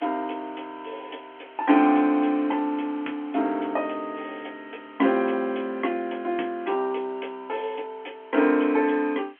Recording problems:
telephone audio; 240 Hz to 3.3 kHz, G.711
background hiss; SNR 27 dB

